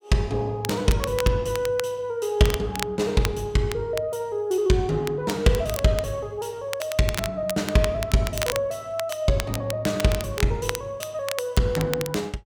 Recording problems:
crackle; vinyl, SNR 10 dB

